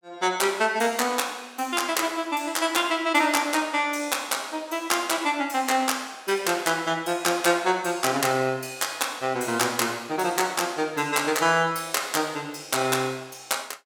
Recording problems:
none

